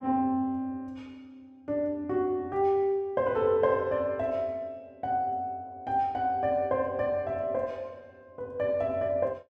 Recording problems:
none

